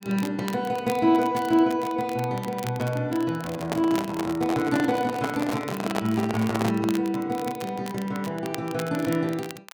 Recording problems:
crackle; vinyl, SNR 16 dB
handling noise; from 3.5 to 7 s; peak +2 dB vs average level

